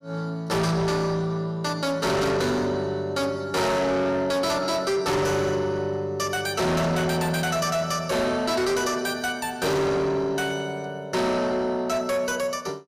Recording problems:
distorted audio; soft clipping, signal-to-distortion ratio 7 dB

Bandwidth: 14.5 kHz